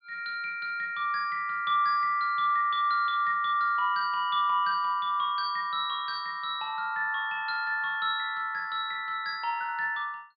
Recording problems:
treble missing; nothing above 4.8 kHz

